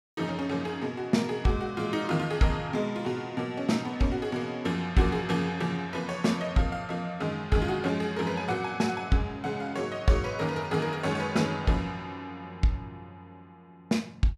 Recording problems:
none

